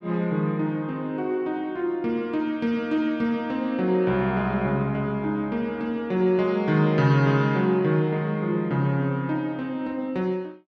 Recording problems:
none

